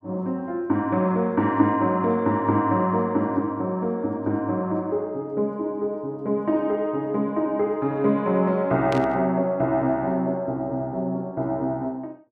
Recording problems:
static burst; at 9 s; peak -6 dB vs average level

